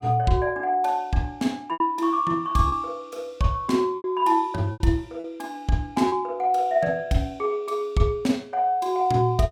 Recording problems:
lost packets; 4% of the sound replaced, filled with repeated pitch periods

